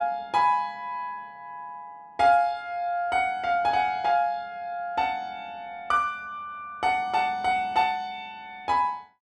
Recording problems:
none

